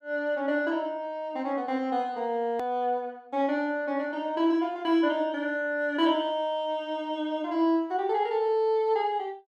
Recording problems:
hard cut with a click; at 2.5 s

